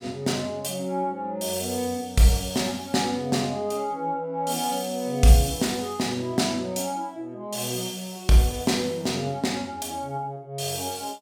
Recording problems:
none

